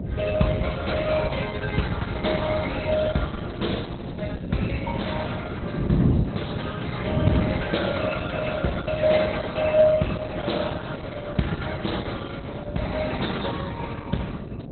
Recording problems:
lossy codec; Opus, log-spectral distance 5 dB, nothing above 4.1 kHz
mains hum; 60 Hz, harmonics up to 720 Hz, SNR 13 dB
wind on the microphone; below 230 Hz, SNR 3 dB

